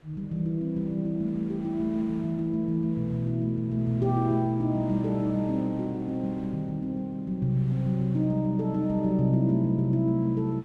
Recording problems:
wind on the microphone; below 1.3 kHz, SNR 26 dB

